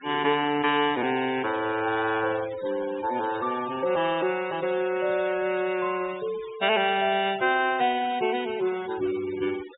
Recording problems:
treble cut off; nothing above 4 kHz
denoising artefacts; signal-to-artefact ratio 16 dB

